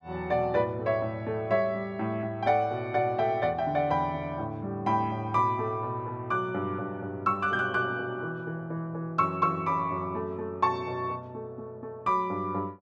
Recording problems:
none

